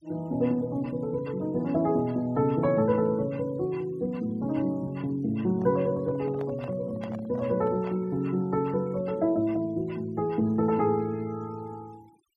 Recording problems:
noise reduction artefacts; signal-to-artefact ratio 28 dB
handling noise; from 5.5 to 8 s; peak -11 dB vs average level

